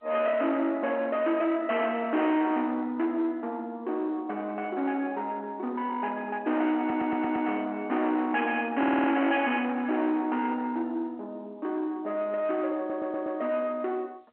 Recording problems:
phone line; 240 Hz to 3.3 kHz, G.711
distorted audio; soft clipping, signal-to-distortion ratio 8 dB
audio stuttering; at 7 s, at 9 s and at 13 s

